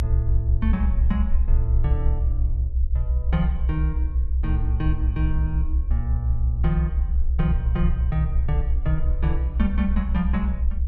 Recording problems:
mains hum; 50 Hz, harmonics up to 550 Hz, SNR 26 dB
rumble; below 66 Hz, SNR -5 dB

